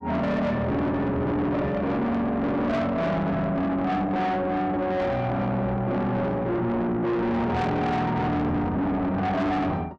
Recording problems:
distorted audio; soft clipping, signal-to-distortion ratio 7 dB

